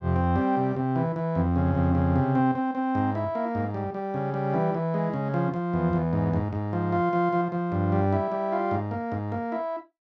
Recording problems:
none

